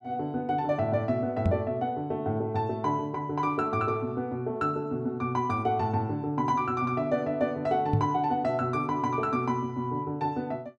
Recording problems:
knock on the microphone; at 1.5 s and at 8 s; peak +6 dB vs average level

